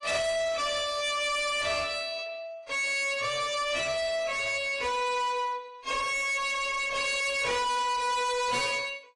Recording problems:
codec artefacts; AAC, then AAC, log-spectral distance 4 dB, nothing above 10.1 kHz
distortion; hard clipping, uneven, signal-to-distortion ratio 5 dB

